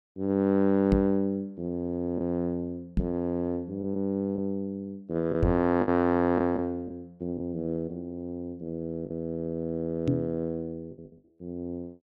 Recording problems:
lost packets; 4% of the sound replaced, filled with the last packet
knock on the microphone; 4 times, first at 1 s; peak +6 dB vs average level

